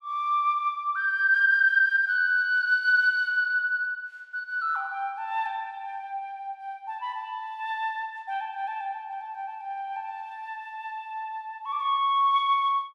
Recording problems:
none

